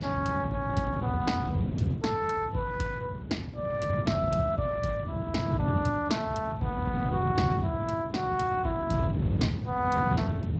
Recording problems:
lossy codec; Speex, log-spectral distance 3 dB, nothing above 7.8 kHz
wind on the microphone; below 210 Hz, SNR 1 dB

